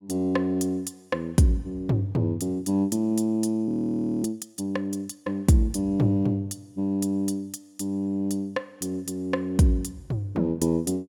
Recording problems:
frozen audio; at 3.5 s for 0.5 s

